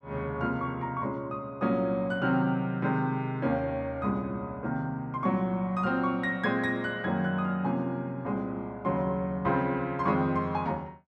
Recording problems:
none

